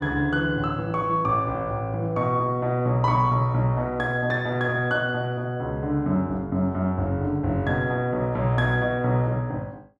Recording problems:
none

